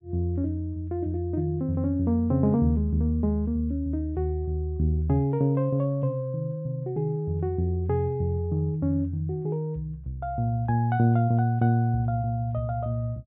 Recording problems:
treble cut off; nothing above 4 kHz

